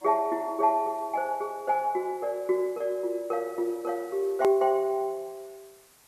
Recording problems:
background hiss; slope -1 dB per octave, SNR 27 dB
hard cut with a click; at 4.5 s

